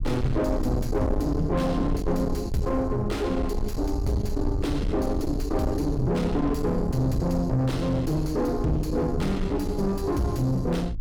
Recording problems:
distorted audio; soft clipping, signal-to-distortion ratio 7 dB
rumble; below 160 Hz, SNR 5 dB

